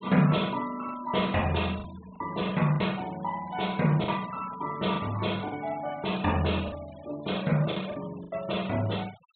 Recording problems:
low-pass filter; nothing above 4 kHz
denoising artefacts; signal-to-artefact ratio 18 dB
lost packets; 5% of the sound replaced, filled with the last packet

